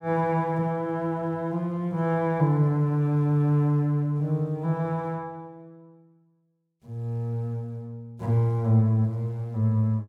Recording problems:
none

